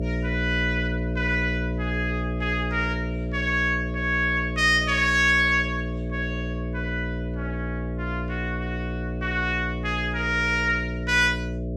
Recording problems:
hum; 60 Hz, harmonics up to 660 Hz, SNR 5 dB

